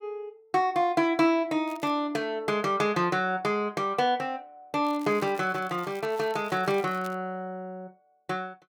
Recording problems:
crackling; at 1.5 s and from 5 to 7 s; loose cable, SNR 24 dB

